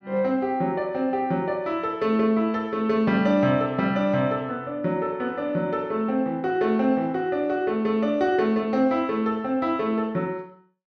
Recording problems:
none

